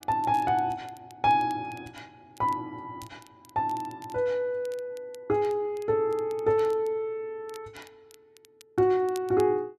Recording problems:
crackling; vinyl, SNR 27 dB

